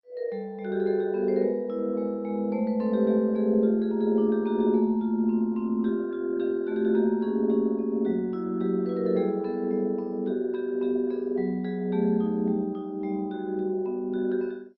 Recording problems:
lossy compression; MP2, log-spectral distance 2 dB

